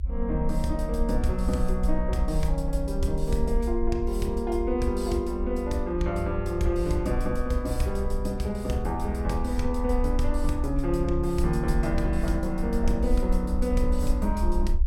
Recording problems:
low-frequency rumble; below 62 Hz, SNR 3 dB

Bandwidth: 16.5 kHz